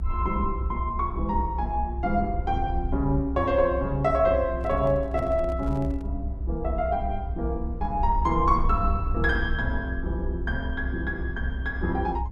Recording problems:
low-frequency rumble; below 66 Hz, SNR 5 dB
microphone handling noise; from 4.5 to 6 s; peak -9 dB vs average level

